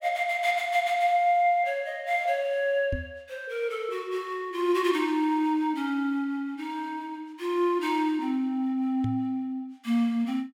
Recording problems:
microphone bump; at 3 s and at 9 s; peak -1 dB vs average level

